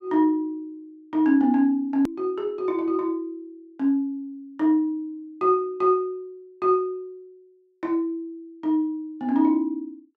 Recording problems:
edit click; at 2 s

